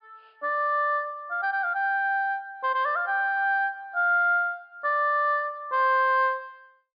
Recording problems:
treble missing; nothing above 5.2 kHz

